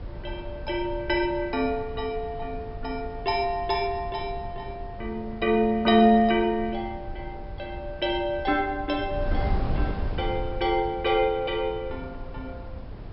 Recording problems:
treble missing; nothing above 5.4 kHz
wind on the microphone; below 130 Hz, SNR 11 dB

